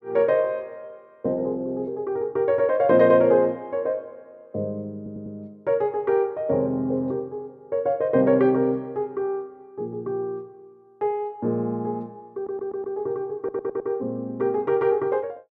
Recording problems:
audio stuttering; at 5 s, at 12 s and at 13 s

